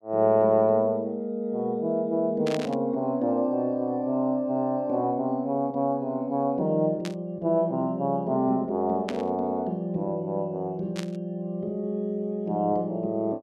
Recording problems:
static burst; 4 times, first at 2.5 s; peak -4 dB vs average level

